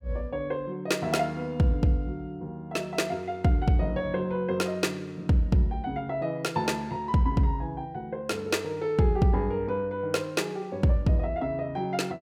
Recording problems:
none

